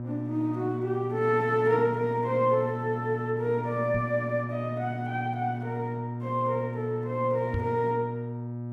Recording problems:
electrical hum; 60 Hz, harmonics up to 960 Hz, SNR 6 dB
microphone bump; at 4 s and at 7.5 s; peak +1 dB vs average level

